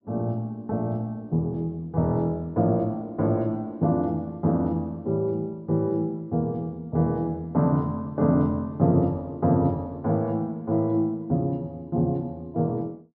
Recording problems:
treble missing; nothing above 5.5 kHz

